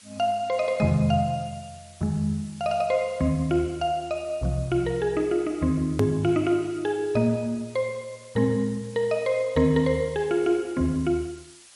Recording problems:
lossy compression; MP3, log-spectral distance 4 dB, nothing above 13.1 kHz
hiss; slope +2 dB per octave, SNR 24 dB
hard cut with a click; at 6 s

